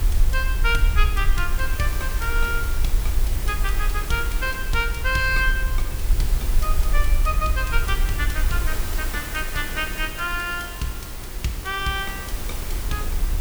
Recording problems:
hum; 60 Hz, harmonics up to 360 Hz, SNR 18 dB
hiss; slope -3 dB per octave, SNR 7 dB
rumble; below 50 Hz, SNR 0 dB

